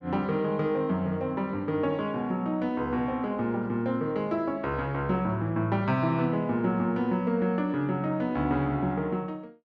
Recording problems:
none

